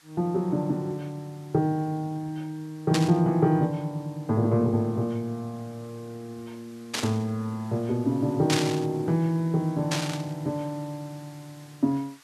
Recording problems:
hiss; SNR 27 dB
static burst; 4 times, first at 3 s; peak +5 dB vs average level

